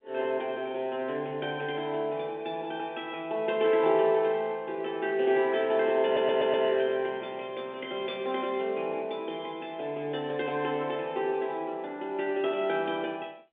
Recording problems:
telephone audio; 190 Hz to 3.6 kHz, G.711
audio stuttering; at 6 s

